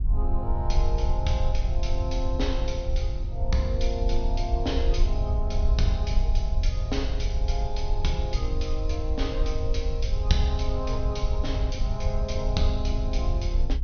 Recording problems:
low-pass filter; nothing above 6.4 kHz
low-frequency rumble; below 64 Hz, SNR -3 dB

